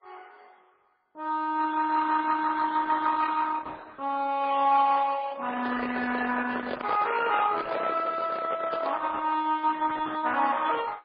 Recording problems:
lossy compression; Opus, then MP3, log-spectral distance 4 dB, nothing above 4.1 kHz
handling noise; from 5.5 to 9 s; peak -3 dB vs average level

